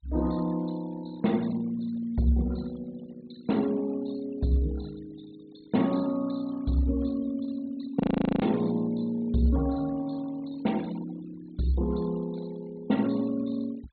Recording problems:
treble missing; nothing above 4.3 kHz
noise reduction artefacts; signal-to-artefact ratio 21 dB
frozen audio; at 8 s

